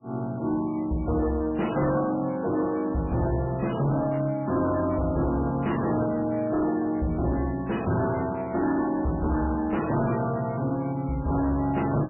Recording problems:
codec artefacts; MP3, log-spectral distance 7 dB, nothing above 2.6 kHz
distortion; hard clipping, signal-to-distortion ratio 10 dB

